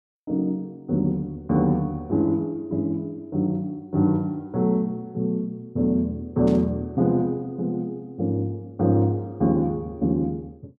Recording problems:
burst of static; at 6.5 s; peak -15 dB vs average level

